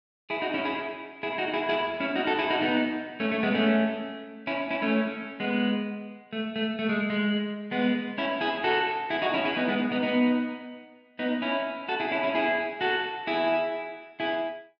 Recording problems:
none

